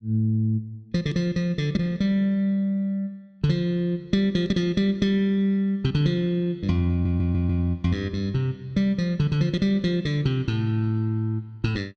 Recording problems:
stutter; at 7 s

